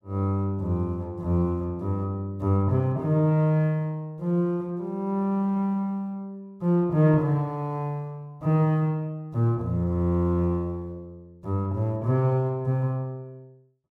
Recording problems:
none

